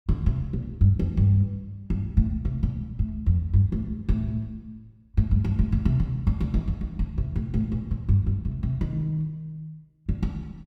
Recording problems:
none

